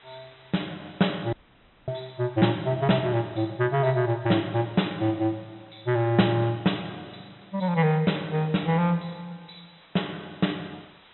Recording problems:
treble cut off; nothing above 3.9 kHz
background hiss; SNR 28 dB
audio cutting out; at 1.5 s for 0.5 s

